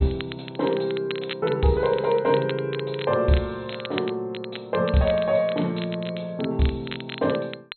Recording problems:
treble cut off; nothing above 4.2 kHz
crackle; vinyl, SNR 14 dB

